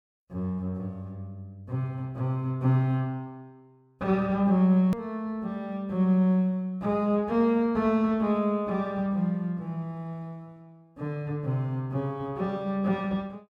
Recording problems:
hard cut with a click; at 5 s

